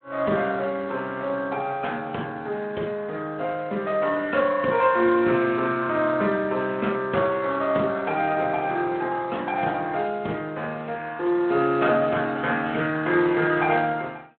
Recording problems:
telephone audio; 170 Hz to 3.6 kHz, Speex

